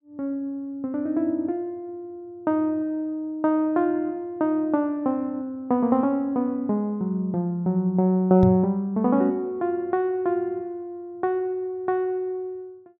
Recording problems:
microphone thump; at 8.5 s; peak +4 dB vs average level

